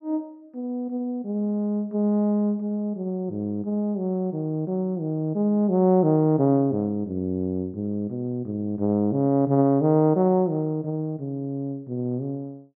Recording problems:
none

